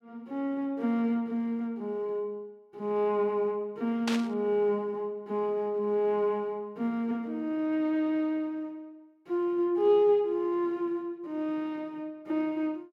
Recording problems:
static burst; at 4 s; peak +1 dB vs average level

